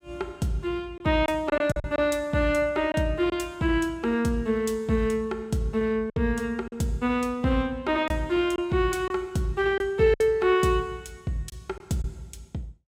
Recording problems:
packet loss; 4% of the sound replaced, filled with silence

